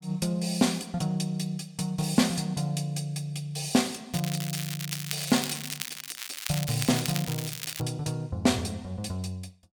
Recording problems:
crackle; from 4 to 8 s; loose cable, SNR 6 dB

